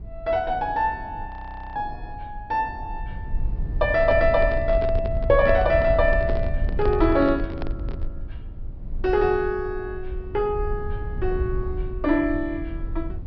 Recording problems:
treble missing; nothing above 5.5 kHz
rumble; below 72 Hz, SNR 8 dB
audio freezing; at 1.5 s
handling noise; from 4 to 8 s; peak -4 dB vs average level

